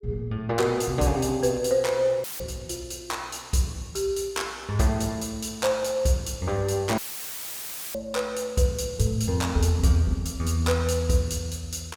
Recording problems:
dropout; at 2 s and at 7 s for 1 s; filled with static

